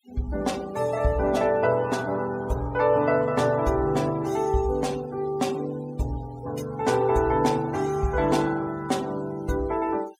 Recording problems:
denoising artefacts; signal-to-artefact ratio 20 dB

